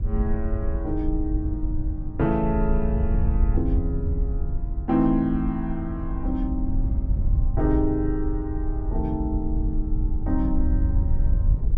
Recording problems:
wind on the microphone; below 72 Hz, SNR 0 dB

